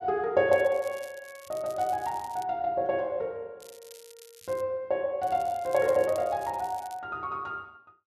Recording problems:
crackle; from 0.5 to 2.5 s, from 3.5 to 4.5 s and from 5 to 7 s; loose cable, SNR 22 dB

